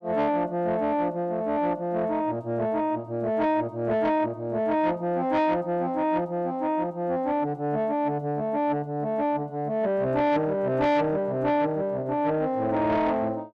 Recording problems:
distorted audio; soft clipping, signal-to-distortion ratio 12 dB

